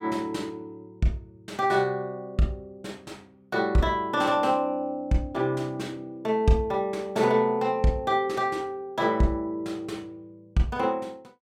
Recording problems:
none

